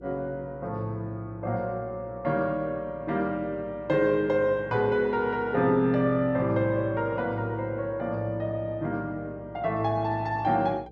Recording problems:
hum; 60 Hz, harmonics up to 480 Hz, SNR 22 dB

